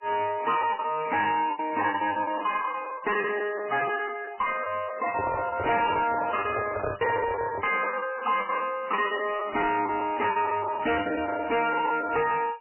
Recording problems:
lossy codec; MP3, log-spectral distance 6 dB, nothing above 2.5 kHz
distortion; soft clipping, signal-to-distortion ratio 7 dB
lost packets; 17% of the sound replaced, filled with the last packet
handling noise; from 5 to 8 s; peak 0 dB vs average level

